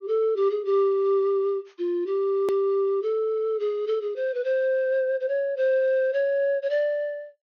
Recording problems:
low-pass filter; nothing above 6.6 kHz
hard cut with a click; at 2.5 s

